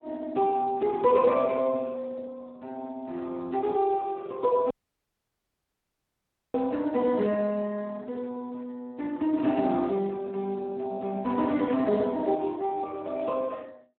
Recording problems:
telephone audio; 220 Hz to 2.6 kHz, Speex
audio cutting out; at 4.5 s for 2 s

